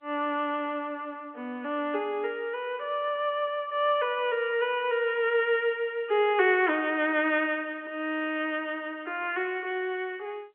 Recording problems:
telephone audio; 260 Hz to 3.2 kHz, G.711

